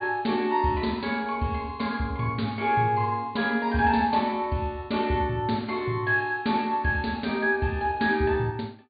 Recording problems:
treble cut off; nothing above 4.7 kHz

